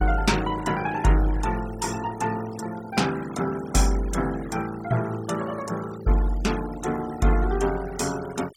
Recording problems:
noise reduction artefacts; signal-to-artefact ratio 16 dB

